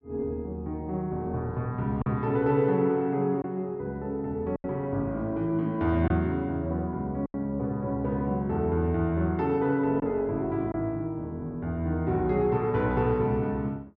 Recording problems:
lost packets; 2% of the sound replaced, filled with silence

